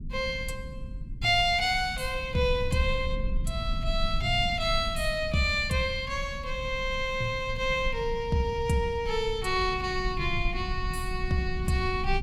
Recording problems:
rumble; below 74 Hz, SNR 9 dB

